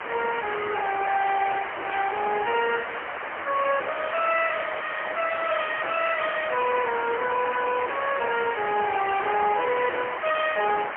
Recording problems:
telephone audio; 300 Hz to 3.3 kHz, AMR-NB, then MP3
distorted audio; hard clipping, uneven, signal-to-distortion ratio 9 dB
background hiss; SNR 6 dB

